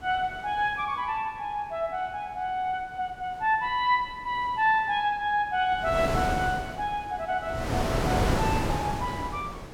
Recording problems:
wind on the microphone; below 820 Hz, SNR 2 dB

